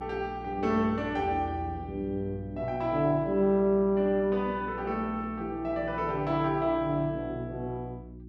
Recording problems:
hum; 60 Hz, harmonics up to 360 Hz, SNR 15 dB

